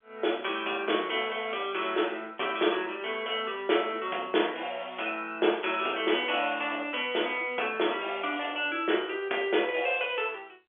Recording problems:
telephone audio; 300 Hz to 3.5 kHz, G.711

